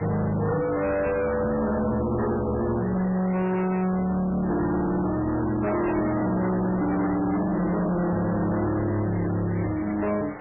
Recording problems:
lossy compression; MP3, log-spectral distance 5 dB, nothing above 2.7 kHz
distortion; hard clipping, signal-to-distortion ratio 6 dB
hiss; SNR 16 dB

